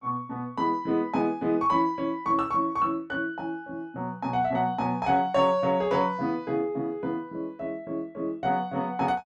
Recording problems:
none

